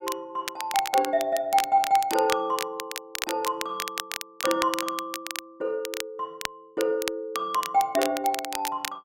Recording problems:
crackling; vinyl, SNR 7 dB

